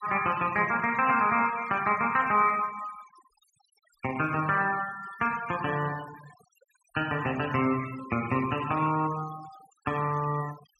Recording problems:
denoising artefacts; signal-to-artefact ratio 18 dB

